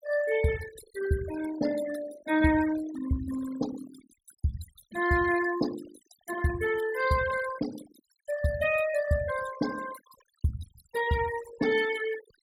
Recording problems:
denoising artefacts; signal-to-artefact ratio 12 dB

